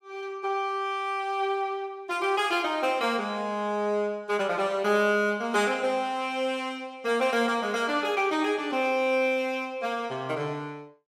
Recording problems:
none

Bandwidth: 16 kHz